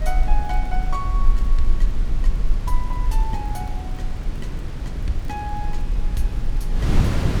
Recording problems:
low-frequency rumble; below 36 Hz, strongest tone 20 Hz, SNR -6 dB
wind on the microphone; below 180 Hz, SNR -4 dB
crackling; vinyl, SNR 26 dB

